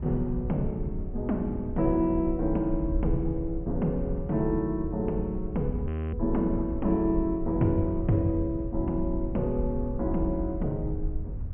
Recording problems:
low-pass filter; nothing above 3.1 kHz
low-frequency rumble; below 84 Hz, SNR 12 dB
wind on the microphone; below 72 Hz, SNR 8 dB
audio freezing; at 6 s

